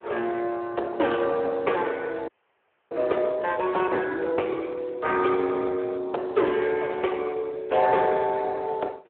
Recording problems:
telephone audio; 320 Hz to 2.9 kHz, Speex
frozen audio; at 2.5 s for 0.5 s

